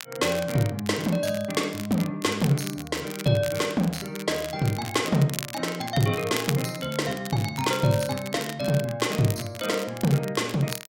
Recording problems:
crackle; vinyl, SNR 12 dB

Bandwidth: 16 kHz